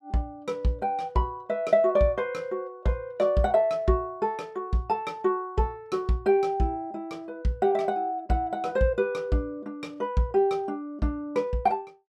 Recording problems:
none

